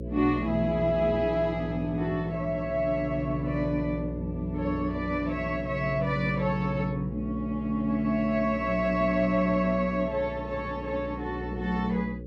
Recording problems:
hum; 60 Hz, harmonics up to 540 Hz, SNR 10 dB

